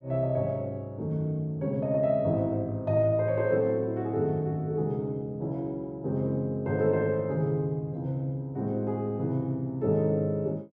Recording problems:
none

